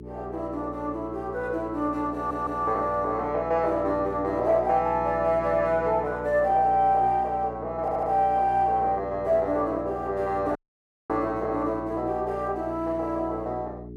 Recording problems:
mains hum; 60 Hz, harmonics up to 420 Hz, SNR 14 dB
audio stuttering; at 2 s and at 8 s
dropout; at 11 s for 0.5 s

